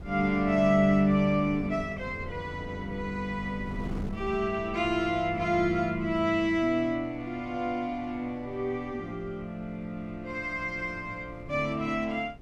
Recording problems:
wind noise; below 190 Hz, SNR 17 dB

